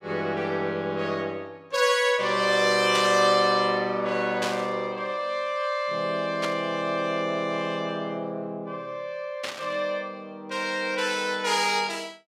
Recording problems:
static burst; 4 times, first at 3 s; peak -1 dB vs average level

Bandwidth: 16 kHz